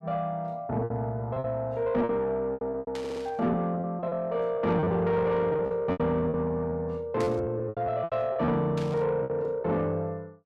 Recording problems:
distortion; soft clipping, signal-to-distortion ratio 12 dB
lost packets; 12% of the sound replaced, filled with repeated pitch periods
burst of static; at 3 s, at 7 s and at 9 s; peak -9 dB vs average level
stutter; at 3 s

